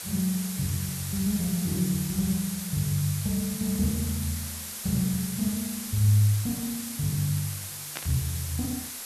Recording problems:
background hiss; slope +1 dB per octave, SNR 6 dB
static burst; at 8 s; peak -4 dB vs average level

